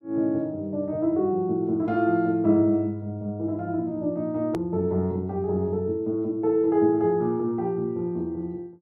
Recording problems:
hard cut with a click; at 4.5 s

